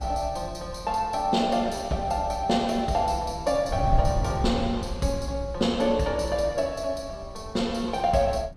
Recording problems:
wind noise; below 110 Hz, SNR 10 dB

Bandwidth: 15 kHz